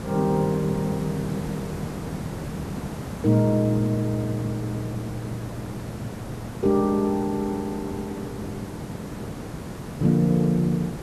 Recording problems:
hiss; slope -7 dB per octave, SNR 9 dB

